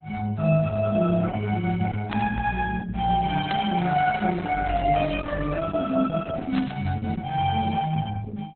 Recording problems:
codec artefacts; Opus, log-spectral distance 4 dB
burst of static; at 2 s, at 3.5 s and at 6.5 s; peak -2 dB vs average level

